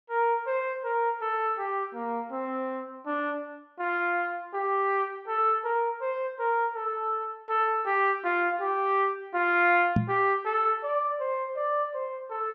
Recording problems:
treble missing; nothing above 7.9 kHz
microphone thump; at 10 s; peak +6 dB vs average level

